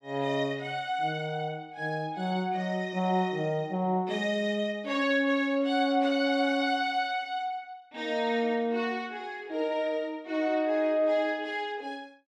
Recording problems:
none

